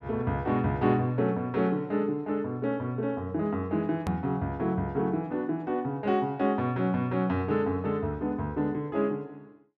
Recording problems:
edit click; at 4 s

